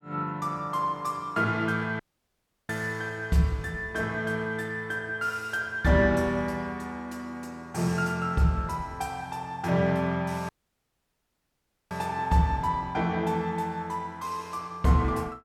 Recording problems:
dropout; at 2 s for 0.5 s and at 10 s for 1.5 s

